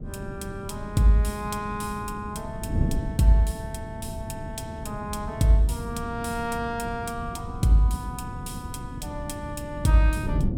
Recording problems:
wind on the microphone; below 190 Hz, SNR 8 dB

